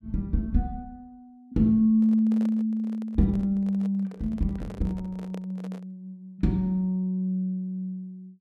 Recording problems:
microphone handling noise; from 2 to 6 s; peak -11 dB vs average level

